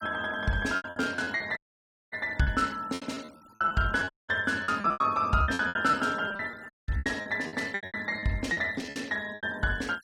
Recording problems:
noise reduction artefacts; signal-to-artefact ratio 23 dB
packet loss; 17% of the sound replaced, filled with repeated pitch periods
dropout; at 1.5 s for 0.5 s, at 4 s and at 6.5 s

